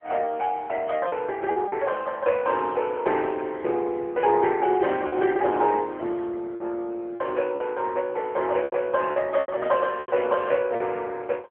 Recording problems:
telephone audio; 280 Hz to 3.2 kHz, AMR-NB
lost packets; 5% of the sound replaced, filled with repeated pitch periods

